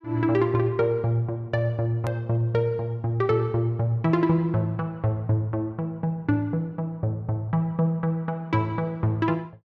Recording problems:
click at an edit; at 2 s

